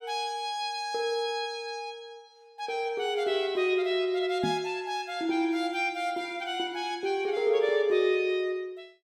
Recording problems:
microphone thump; at 4.5 s; peak 0 dB vs average level

